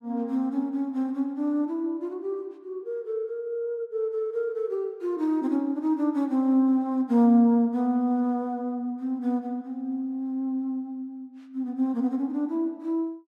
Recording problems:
none

